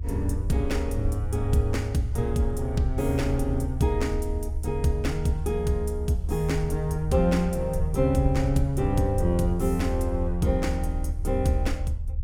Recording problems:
low-frequency rumble; below 74 Hz, strongest tone 32 Hz, SNR 4 dB

